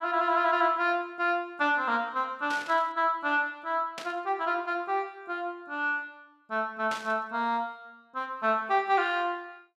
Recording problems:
static burst; at 2.5 s, at 4 s and at 7 s; peak -6 dB vs average level

